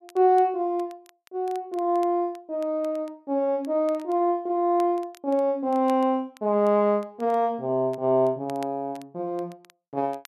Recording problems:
crackle; vinyl, SNR 29 dB

